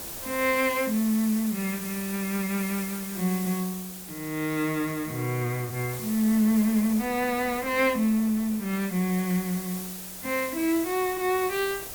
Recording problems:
background hiss; slope 0 dB per octave, SNR 9 dB
wind noise; below 780 Hz, SNR 24 dB

